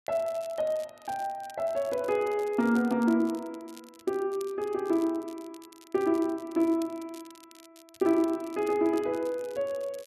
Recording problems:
crackling; vinyl, SNR 24 dB

